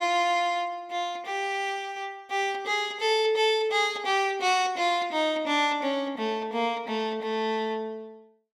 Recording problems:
none

